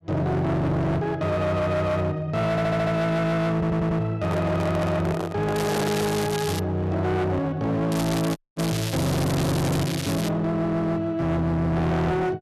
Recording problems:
distortion; hard clipping, signal-to-distortion ratio 6 dB
audio stuttering; at 2.5 s and at 3.5 s
microphone handling noise; from 4 to 6 s; peak 0 dB vs average level
crackle; from 5.5 to 6.5 s and from 8 to 10 s; loose cable, SNR 8 dB
audio cutting out; at 8.5 s

